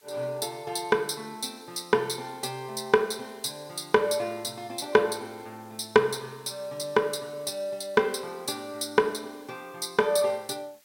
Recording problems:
background hiss; slope +2 dB per octave, SNR 28 dB

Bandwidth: 16.5 kHz